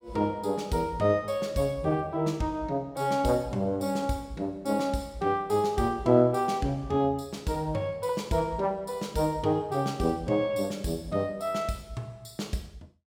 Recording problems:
none

